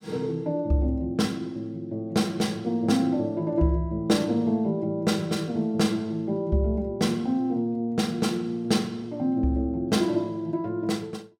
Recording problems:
none

